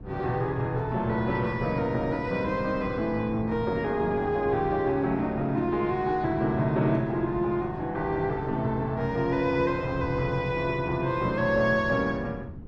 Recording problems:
wind noise; below 200 Hz, SNR 14 dB

